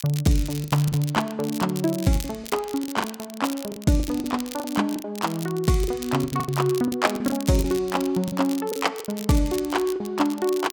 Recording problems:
crackling; vinyl, SNR 14 dB
packet loss; 11% of the sound replaced, filled with the last packet

